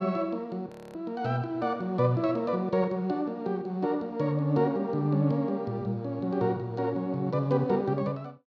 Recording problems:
audio freezing; at 0.5 s

